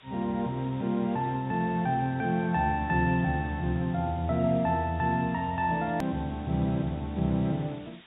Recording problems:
low-pass filter; nothing above 4 kHz
background hiss; SNR 25 dB
edit click; at 6 s

